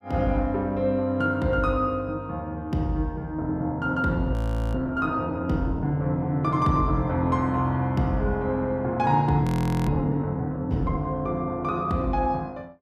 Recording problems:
audio freezing; at 4.5 s and at 9.5 s

